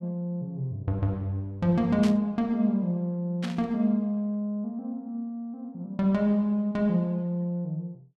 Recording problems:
burst of static; at 2 s and at 3.5 s; peak -6 dB vs average level

